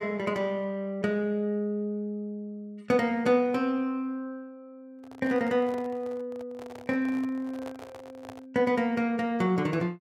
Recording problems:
handling noise; from 5 to 8.5 s; peak -10 dB vs average level

